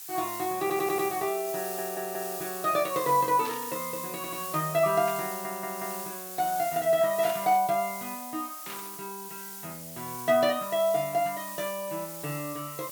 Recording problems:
background hiss; slope +2 dB per octave, SNR 9 dB
stutter; 4 times, first at 0.5 s
static burst; 4 times, first at 3.5 s; peak -9 dB vs average level

